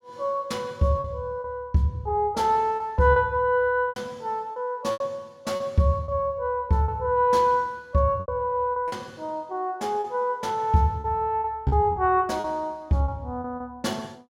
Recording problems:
packet loss; 7% of the sound replaced, filled with repeated pitch periods

